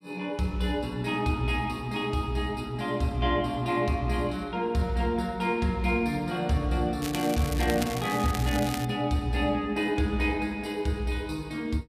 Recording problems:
crackling; from 7 to 9 s; loose cable, SNR 10 dB

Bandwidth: 14.5 kHz